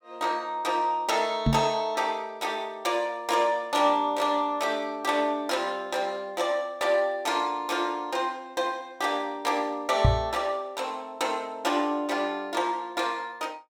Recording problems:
microphone bump; at 1.5 s and at 10 s; peak +9 dB vs average level

